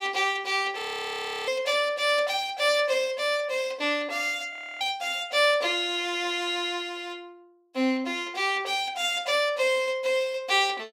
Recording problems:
audio freezing; at 1 s for 0.5 s and at 4.5 s

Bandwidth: 16 kHz